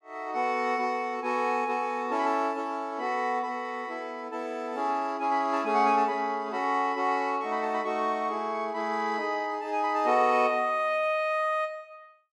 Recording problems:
none

